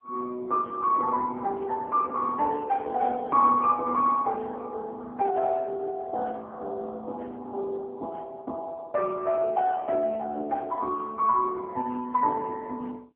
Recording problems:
telephone audio; 260 Hz to 3.2 kHz, AMR-NB

